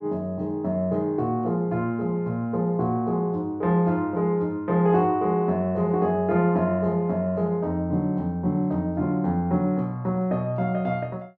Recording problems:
none

